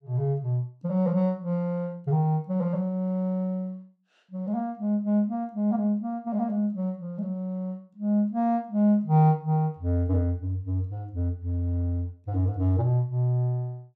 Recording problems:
none

